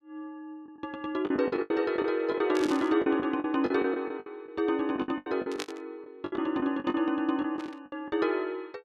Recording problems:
packet loss; 14% of the sound replaced, filled with the last packet
burst of static; at 2.5 s, at 5.5 s and at 7.5 s; peak -3 dB vs average level

